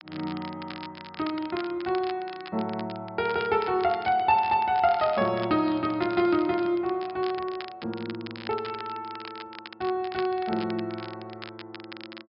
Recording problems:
treble cut off; nothing above 5.5 kHz
crackle; vinyl, SNR 16 dB

